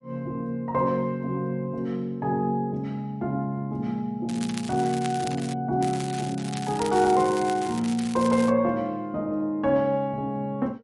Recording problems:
lossy codec; MP3, log-spectral distance 2 dB
crackle; from 4.5 to 5.5 s and from 6 to 8.5 s; loose cable, SNR 13 dB

